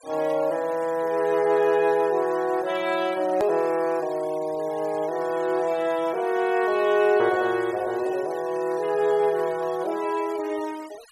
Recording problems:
noise reduction artefacts; signal-to-artefact ratio 22 dB
click at an edit; at 3.5 s

